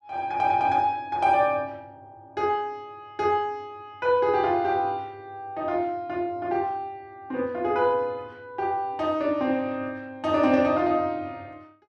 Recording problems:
none

